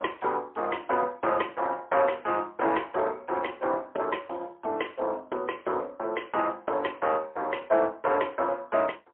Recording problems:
telephone audio; 320 Hz to 3.1 kHz, AMR-NB, then MP3

